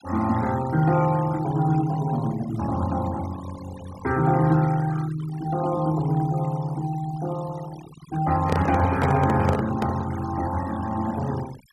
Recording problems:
noise reduction artefacts; signal-to-artefact ratio 17 dB
microphone handling noise; from 8.5 to 10 s; peak +2 dB vs average level

